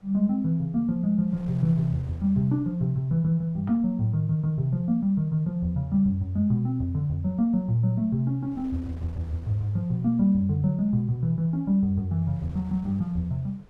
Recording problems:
wind on the microphone; below 350 Hz, SNR 27 dB

